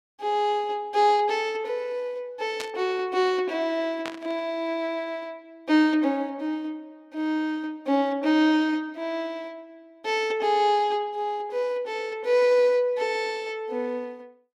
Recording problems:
static burst; at 2.5 s and at 4 s; peak -4 dB vs average level

